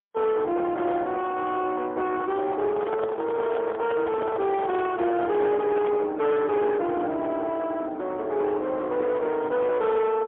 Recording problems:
telephone audio; 280 Hz to 3.5 kHz, AMR-NB, then MP3
distorted audio; soft clipping, signal-to-distortion ratio 11 dB
microphone handling noise; from 2.5 to 6 s; peak -2 dB vs average level

